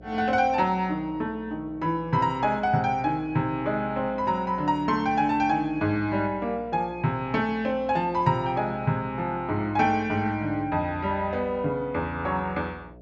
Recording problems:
treble cut off; nothing above 8 kHz
electrical hum; 60 Hz, harmonics up to 720 Hz, SNR 21 dB

